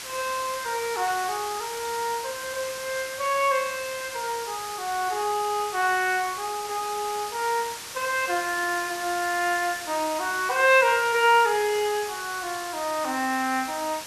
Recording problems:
hiss; slope +1 dB per octave, SNR 10 dB

